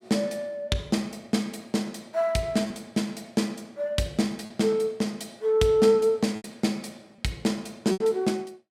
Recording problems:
lost packets; 3% of the sound replaced, filled with repeated pitch periods

